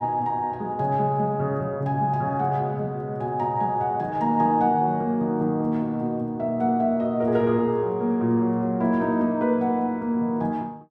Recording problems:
none

